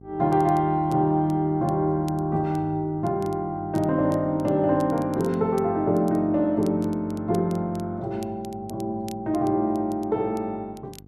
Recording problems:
hum; 50 Hz, harmonics up to 800 Hz, SNR 23 dB
crackling; vinyl, SNR 27 dB

